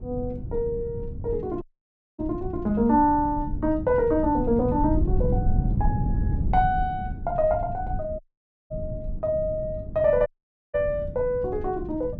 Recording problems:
wind on the microphone; below 130 Hz, SNR 6 dB
audio cutting out; at 1.5 s for 0.5 s, at 8 s for 0.5 s and at 10 s

